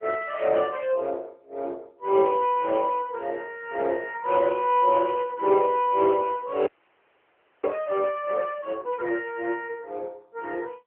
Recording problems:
phone line; 300 Hz to 3.3 kHz, AMR-NB
audio freezing; at 6.5 s for 1 s

